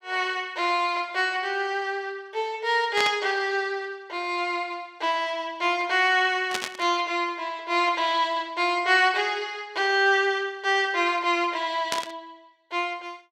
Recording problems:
burst of static; at 3 s, at 6.5 s and at 12 s; peak +1 dB vs average level

